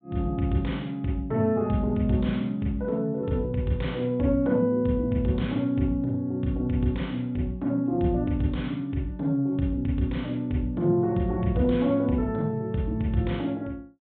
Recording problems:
treble missing; nothing above 4 kHz

